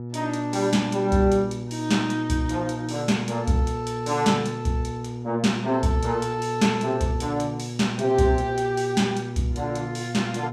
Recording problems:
electrical hum; 60 Hz, harmonics up to 960 Hz, SNR 9 dB

